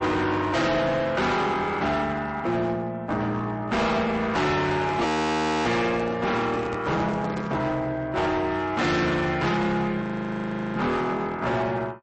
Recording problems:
codec artefacts; MP3, log-spectral distance 2 dB, nothing above 8.2 kHz
distorted audio; hard clipping, uneven, signal-to-distortion ratio 6 dB
handling noise; from 4.5 to 7.5 s; peak -3 dB vs average level
frozen audio; at 5 s for 0.5 s and at 10 s for 0.5 s

